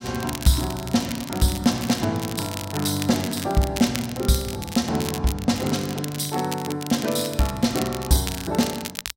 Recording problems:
crackle; vinyl, SNR 10 dB

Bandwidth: 16 kHz